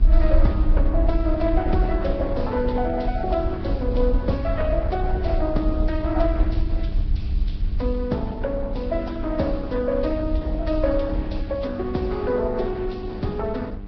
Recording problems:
codec artefacts; Opus, then Vorbis, log-spectral distance 2 dB, nothing above 5.3 kHz
hum; 50 Hz, harmonics up to 1.5 kHz, SNR 13 dB
low-frequency rumble; below 58 Hz, SNR 0 dB

